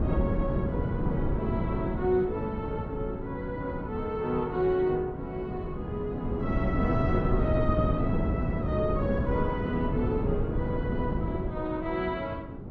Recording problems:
wind noise; below 280 Hz, SNR 0 dB

